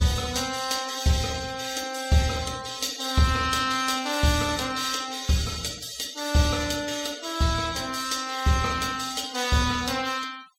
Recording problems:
noise reduction artefacts; signal-to-artefact ratio 16 dB

